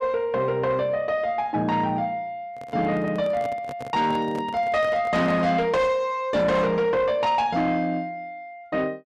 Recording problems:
distortion; soft clipping, signal-to-distortion ratio 11 dB
handling noise; from 2.5 to 5.5 s; peak -9 dB vs average level

